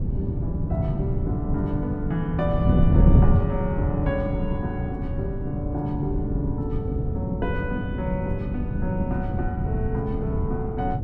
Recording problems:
wind noise; below 170 Hz, SNR -3 dB

